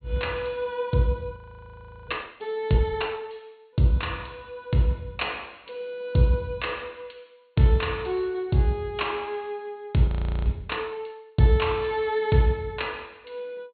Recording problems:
treble missing; nothing above 4.4 kHz
frozen audio; at 1.5 s for 0.5 s and at 10 s

